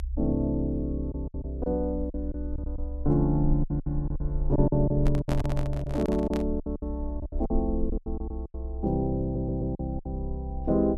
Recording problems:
rumble; below 64 Hz, SNR 6 dB
packet loss; 12% of the sound replaced, filled with silence
microphone handling noise; from 5 to 6.5 s; peak 0 dB vs average level
stutter; at 9 s

